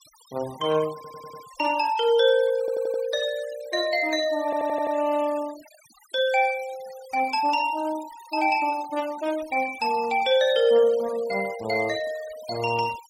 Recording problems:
denoising artefacts; signal-to-artefact ratio 20 dB
audio stuttering; at 1 s, at 2.5 s and at 4.5 s

